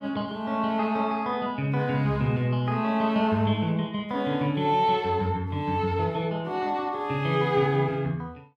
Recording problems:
none

